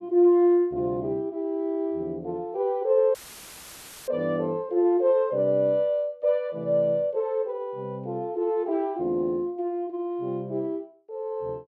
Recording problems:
audio cutting out; at 3 s for 1 s; filled with static

